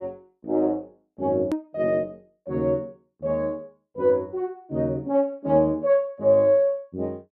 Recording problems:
hard cut with a click; at 1.5 s

